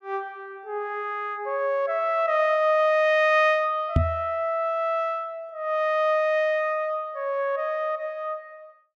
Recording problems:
microphone thump; at 4 s; peak +6 dB vs average level

